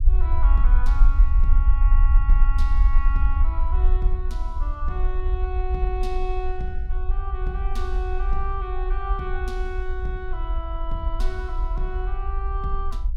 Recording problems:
low-frequency rumble; below 48 Hz, SNR -9 dB

